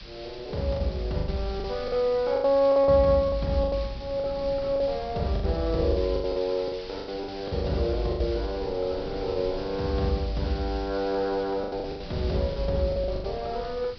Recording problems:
treble missing; nothing above 5.5 kHz
background hiss; SNR 17 dB
wind noise; below 210 Hz, SNR 17 dB
packet loss; 12% of the sound replaced, filled with the last packet

